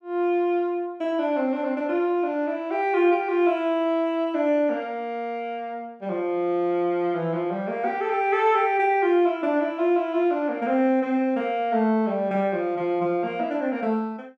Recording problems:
none

